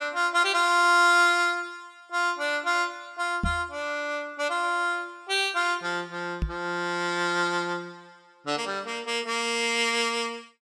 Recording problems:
knock on the microphone; at 3.5 s and at 6.5 s; peak 0 dB vs average level

